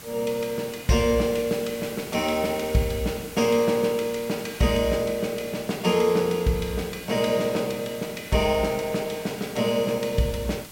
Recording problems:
hiss; slope -2 dB per octave, SNR 16 dB

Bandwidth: 16 kHz